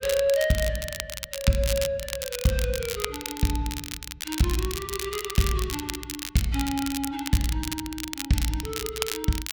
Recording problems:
crackle; vinyl, SNR 5 dB

